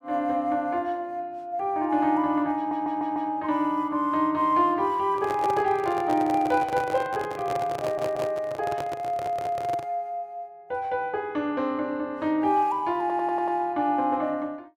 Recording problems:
audio stuttering; 4 times, first at 2.5 s
handling noise; from 5 to 10 s; peak -3 dB vs average level

